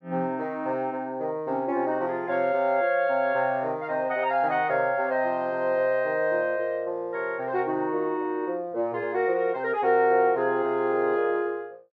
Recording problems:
none

